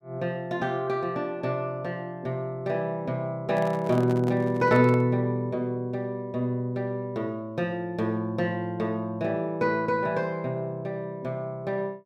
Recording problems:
microphone handling noise; from 3.5 to 5 s; peak -7 dB vs average level

